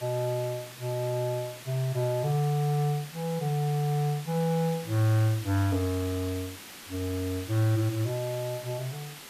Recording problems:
hiss; slope -1 dB per octave, SNR 14 dB

